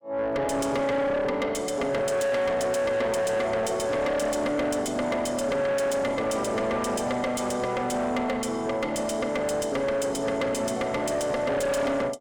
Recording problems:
distorted audio; soft clipping, signal-to-distortion ratio 6 dB

